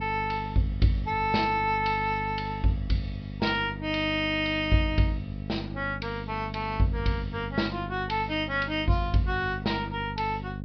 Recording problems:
treble cut off; nothing above 5.5 kHz
hum; 50 Hz, harmonics up to 550 Hz, SNR 9 dB

